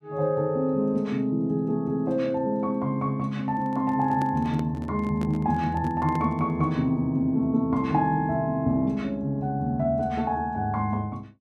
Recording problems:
handling noise; from 3.5 to 6.5 s; peak -5 dB vs average level

